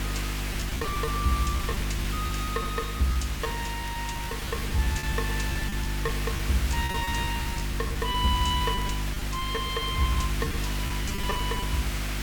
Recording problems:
hum; 50 Hz, harmonics up to 350 Hz, SNR 1 dB
background hiss; SNR 3 dB
crackling; vinyl, SNR 27 dB
lost packets; 13% of the sound replaced, filled with repeated pitch periods

